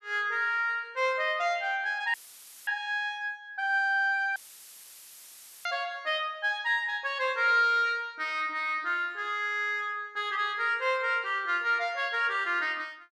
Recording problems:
audio cutting out; at 2 s for 0.5 s and at 4.5 s for 1.5 s; filled with static

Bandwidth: 13 kHz